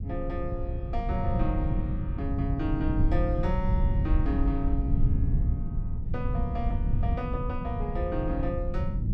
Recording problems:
low-frequency rumble; below 110 Hz, SNR -4 dB

